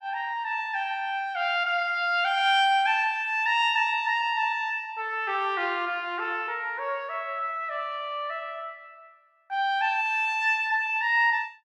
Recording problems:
none

